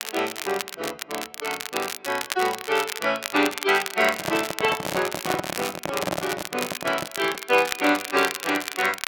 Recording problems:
crackling; vinyl, SNR 7 dB
handling noise; from 4 to 7.5 s; peak +2 dB vs average level

